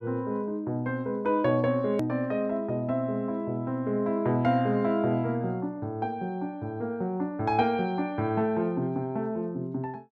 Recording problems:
click at an edit; at 2 s

